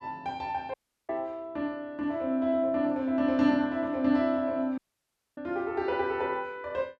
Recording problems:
audio cutting out; at 0.5 s and at 5 s for 0.5 s

